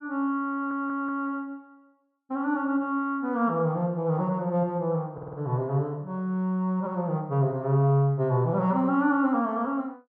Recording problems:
audio stuttering; at 0.5 s and at 5 s

